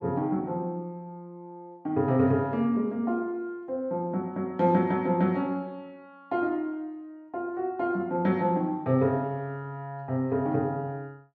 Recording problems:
none

